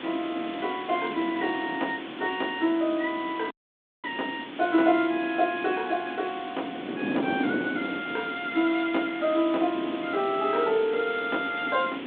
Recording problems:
phone line; 240 Hz to 3.7 kHz, G.726
background hiss; SNR 14 dB
wind on the microphone; below 440 Hz, SNR 9 dB
audio cutting out; at 3.5 s for 0.5 s

